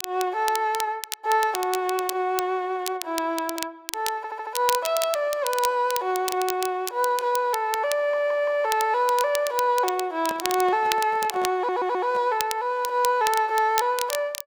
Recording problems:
crackle; vinyl, SNR 9 dB
stutter; at 4 s, at 8 s and at 12 s
microphone handling noise; from 10 to 12 s; peak -9 dB vs average level

